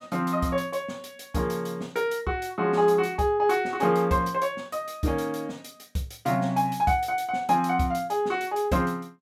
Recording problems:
none

